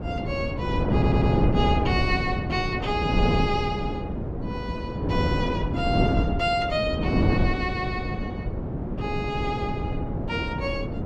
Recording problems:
wind on the microphone; below 330 Hz, SNR -2 dB
stutter; at 1 s

